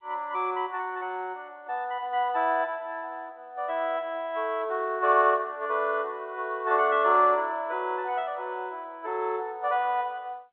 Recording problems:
telephone audio; 320 Hz to 3.7 kHz, G.711

